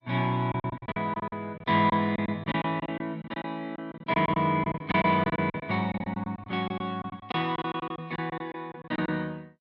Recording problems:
lossy codec; MP2, log-spectral distance 2 dB
lost packets; 16% of the sound replaced, filled with silence

